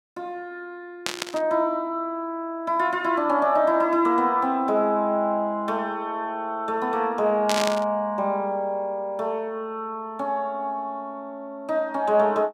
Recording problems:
burst of static; at 1 s and at 7.5 s; peak +2 dB vs average level

